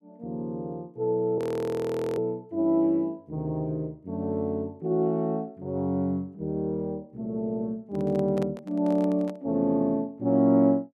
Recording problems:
frozen audio; at 1.5 s for 1 s
microphone handling noise; from 8 to 9.5 s; peak -7 dB vs average level

